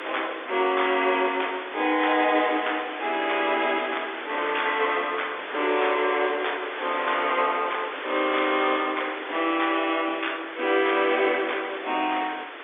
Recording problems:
telephone audio; 260 Hz to 3.6 kHz, G.711
background hiss; SNR 10 dB

